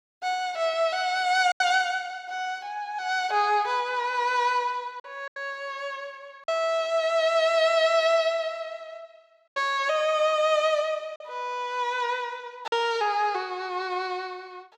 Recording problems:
lost packets; 2% of the sound replaced, filled with silence

